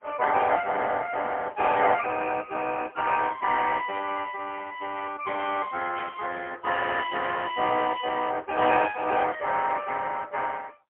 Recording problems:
phone line; 320 Hz to 3 kHz, AMR-NB, then MP3
static burst; at 4 s and at 6 s; peak -11 dB vs average level

